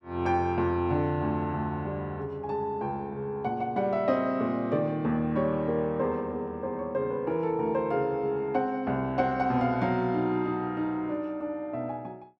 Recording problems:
none

